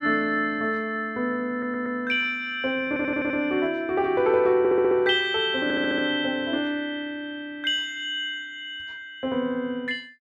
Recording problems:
stutter; 4 times, first at 1.5 s

